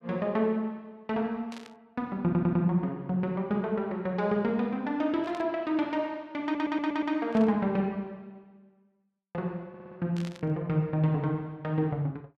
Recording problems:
burst of static; 4 times, first at 1.5 s; peak -11 dB vs average level
audio stuttering; at 2 s, at 6.5 s and at 9.5 s

